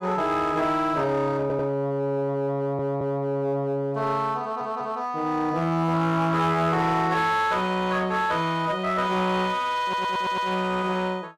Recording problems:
distorted audio; hard clipping, uneven, signal-to-distortion ratio 11 dB
audio stuttering; 4 times, first at 1.5 s

